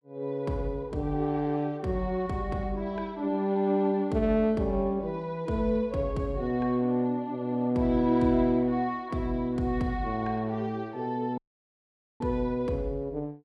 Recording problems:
dropout; at 11 s for 1 s

